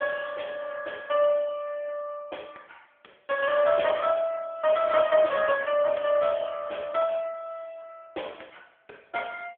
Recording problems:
phone line; 370 Hz to 3.3 kHz, AMR-NB

